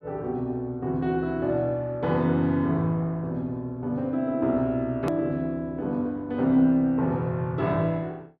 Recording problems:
hard cut with a click; at 5 s

